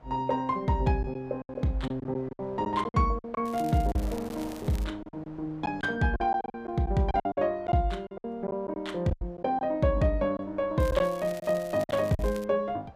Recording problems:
wind on the microphone; below 840 Hz, SNR 23 dB
packet loss; 10% of the sound replaced, filled with silence
crackle; from 3.5 to 5 s and from 11 to 12 s; loose cable, SNR 20 dB

